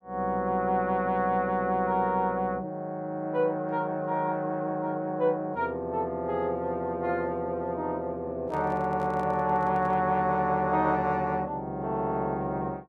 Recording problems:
microphone handling noise; from 8.5 to 10 s; peak -11 dB vs average level

